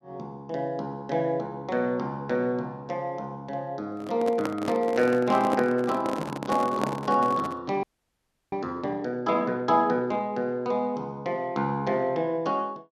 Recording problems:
handling noise; from 4 to 7.5 s; peak +3 dB vs average level
audio freezing; at 8 s for 0.5 s

